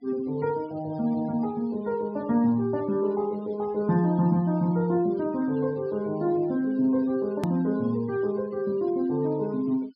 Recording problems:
low-pass filter; nothing above 5.5 kHz
noise reduction artefacts; signal-to-artefact ratio 27 dB
click at an edit; at 7.5 s

